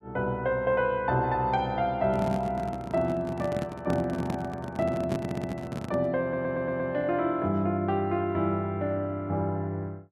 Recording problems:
handling noise; from 2 to 6 s; peak +1 dB vs average level
stutter; at 5 s and at 6 s

